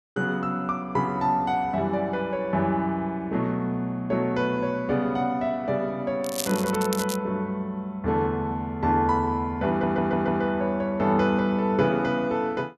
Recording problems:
crackle; at 6 s; loose cable, SNR 9 dB
audio stuttering; at 9.5 s

